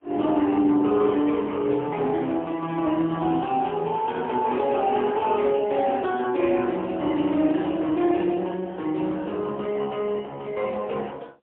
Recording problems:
telephone audio; 220 Hz to 3.3 kHz, AMR-NB, then MP3

